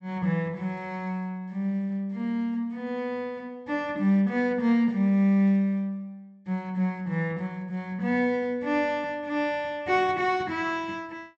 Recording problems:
treble missing; nothing above 8 kHz

